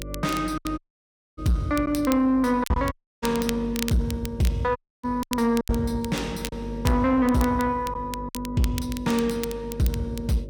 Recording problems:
distortion; soft clipping, signal-to-distortion ratio 9 dB
hum; 50 Hz, harmonics up to 600 Hz, SNR 14 dB
crackle; vinyl, SNR 14 dB
lost packets; 6% of the sound replaced, filled with silence
dropout; at 1 s for 0.5 s, at 3 s and at 5 s

